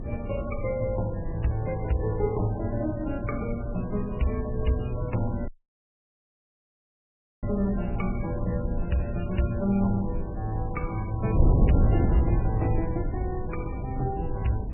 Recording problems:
lossy compression; MP3, log-spectral distance 2 dB, nothing above 2.4 kHz
wind noise; below 140 Hz, SNR 2 dB
audio cutting out; at 5.5 s for 2 s

